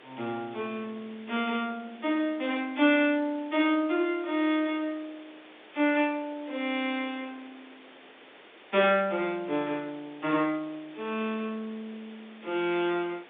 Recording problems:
phone line; 280 Hz to 3.7 kHz, G.711
hiss; SNR 22 dB

